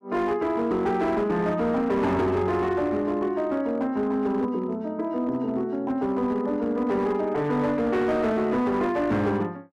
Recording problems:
distortion; hard clipping, signal-to-distortion ratio 12 dB

